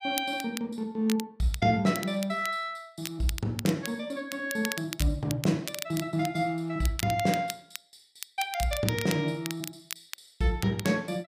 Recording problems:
crackling; vinyl, SNR 10 dB

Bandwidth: 15 kHz